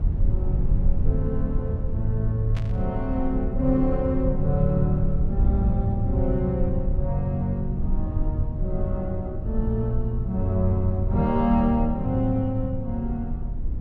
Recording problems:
hum; 60 Hz, harmonics up to 720 Hz, SNR 24 dB
low-frequency rumble; below 78 Hz, SNR 3 dB
static burst; at 2.5 s; peak -9 dB vs average level

